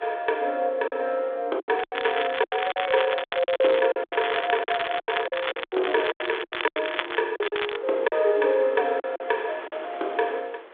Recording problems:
phone line; 300 Hz to 3.6 kHz, G.726
wind on the microphone; below 1.7 kHz, SNR 17 dB
packet loss; 13% of the sound replaced, filled with silence
crackling; from 2 to 4 s, from 4 to 7 s and at 7.5 s; loose cable, SNR 7 dB

